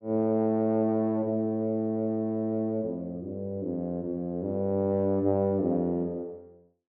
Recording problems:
treble cut off; nothing above 5.5 kHz

